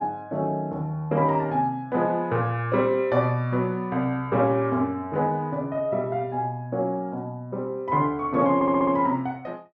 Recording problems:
stutter; at 8.5 s

